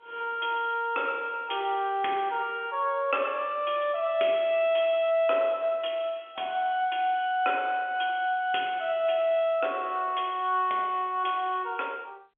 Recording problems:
phone line; 300 Hz to 3.5 kHz, G.711

